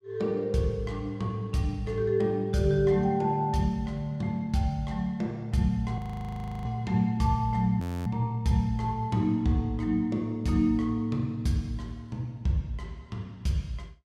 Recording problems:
frozen audio; at 6 s for 0.5 s and at 8 s

